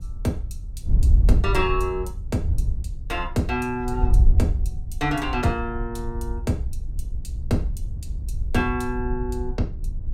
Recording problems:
wind on the microphone; below 68 Hz, SNR 0 dB

